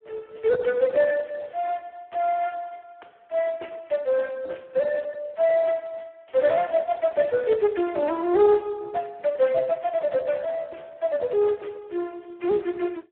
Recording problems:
phone line; 260 Hz to 3.6 kHz, Speex

